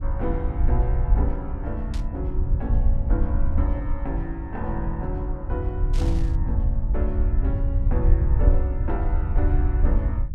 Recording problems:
rumble; below 74 Hz, SNR -7 dB
static burst; at 2 s and at 6 s; peak -4 dB vs average level

